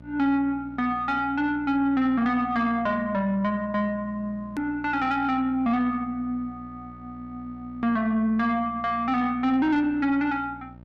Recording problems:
distorted audio; soft clipping, signal-to-distortion ratio 11 dB
electrical hum; 60 Hz, harmonics up to 1.3 kHz, SNR 21 dB
edit click; at 4.5 s

